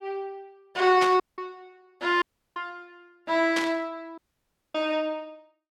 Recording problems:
static burst; at 1 s and at 3.5 s; peak 0 dB vs average level
audio cutting out; at 1 s, at 2 s and at 4 s for 0.5 s

